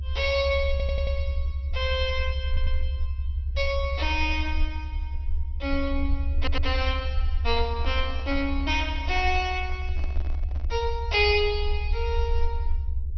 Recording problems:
lossy compression; MP2, log-spectral distance 2 dB, nothing above 5.5 kHz
rumble; below 68 Hz, SNR 2 dB
stutter; at 0.5 s, at 2.5 s and at 6.5 s
handling noise; from 7.5 to 11 s; peak -11 dB vs average level

